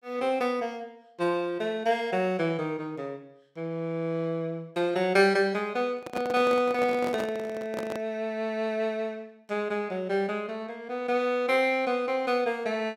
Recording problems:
microphone handling noise; from 6 to 8 s; peak -3 dB vs average level

